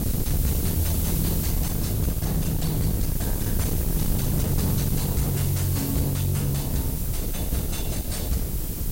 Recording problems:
lossy compression; AAC, log-spectral distance 2 dB, nothing above 12 kHz
distorted audio; soft clipping, signal-to-distortion ratio 8 dB
background hiss; slope +1 dB per octave, SNR 5 dB
wind on the microphone; below 180 Hz, SNR 2 dB

